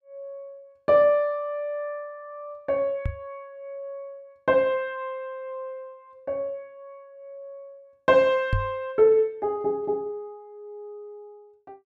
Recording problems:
knock on the microphone; at 3 s and at 8.5 s; peak +3 dB vs average level

